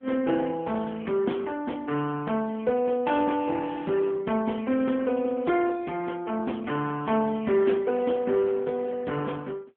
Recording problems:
telephone audio; 170 Hz to 3.3 kHz, AMR-NB

